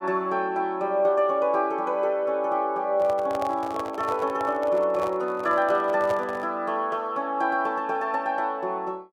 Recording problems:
microphone handling noise; from 3 to 6.5 s; peak -4 dB vs average level

